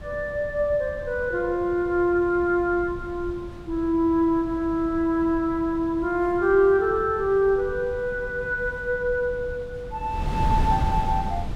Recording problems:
wind noise; below 160 Hz, SNR 12 dB

